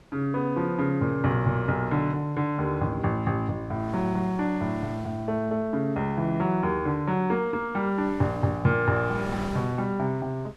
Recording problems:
wind noise; below 950 Hz, SNR 20 dB

